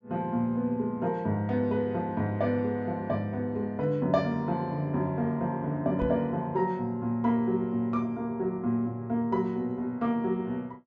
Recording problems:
low-pass filter; nothing above 8 kHz
microphone bump; at 6 s; peak -1 dB vs average level

